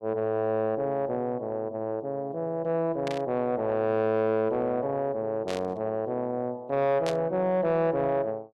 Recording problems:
distortion; soft clipping, signal-to-distortion ratio 11 dB
burst of static; at 3 s, at 5.5 s and at 7 s; peak -4 dB vs average level

